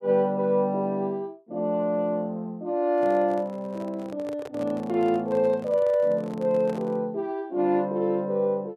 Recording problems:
microphone handling noise; from 3 to 7 s; peak -9 dB vs average level

